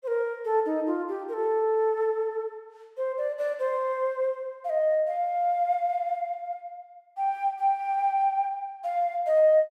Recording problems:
none

